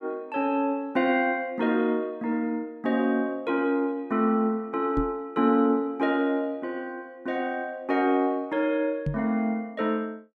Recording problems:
microphone thump; at 5 s and at 9 s; peak +1 dB vs average level

